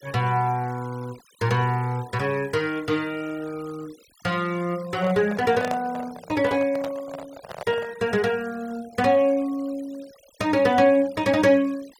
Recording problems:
noise reduction artefacts; signal-to-artefact ratio 23 dB
microphone handling noise; from 5 to 8 s; peak -3 dB vs average level

